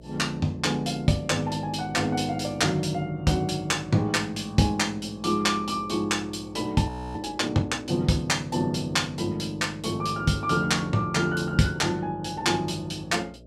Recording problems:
hum; 60 Hz, harmonics up to 660 Hz, SNR 24 dB
frozen audio; at 7 s

